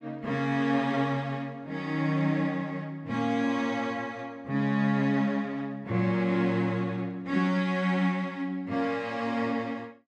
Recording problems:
none

